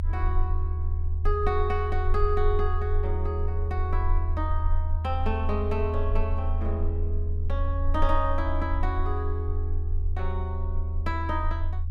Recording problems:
low-frequency rumble; below 80 Hz, strongest tone 22 Hz, SNR -3 dB

